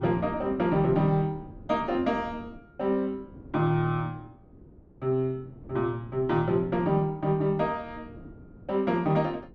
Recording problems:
wind on the microphone; below 330 Hz, SNR 19 dB

